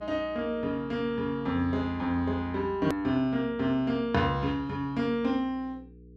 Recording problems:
hum; 60 Hz, harmonics up to 480 Hz, SNR 22 dB
click at an edit; at 3 s

